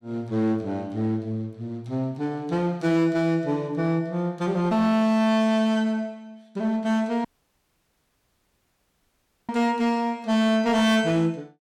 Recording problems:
distorted audio; hard clipping, uneven, signal-to-distortion ratio 11 dB
dropout; at 7.5 s for 2 s

